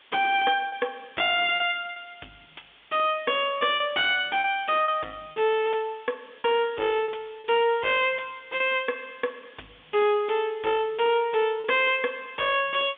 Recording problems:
telephone audio; 220 Hz to 3.5 kHz, G.711
distortion; soft clipping, signal-to-distortion ratio 7 dB
hiss; SNR 28 dB
lost packets; 4% of the sound replaced, filled with repeated pitch periods

